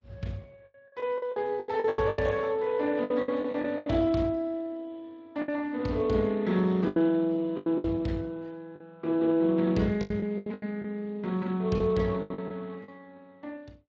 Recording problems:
codec artefacts; Opus, then Speex, log-spectral distance 2 dB
packet loss; 11% of the sound replaced, filled with the last packet

